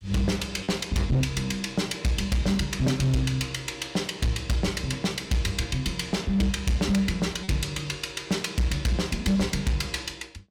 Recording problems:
distortion; hard clipping, signal-to-distortion ratio 10 dB
lost packets; 0.8% of the sound replaced, filled with repeated pitch periods

